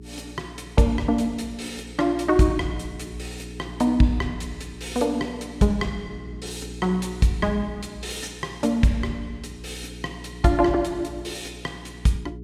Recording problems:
hum; 60 Hz, harmonics up to 420 Hz, SNR 15 dB

